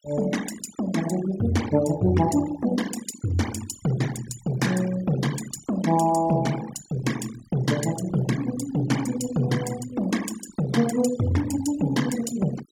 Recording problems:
noise reduction artefacts; signal-to-artefact ratio 13 dB

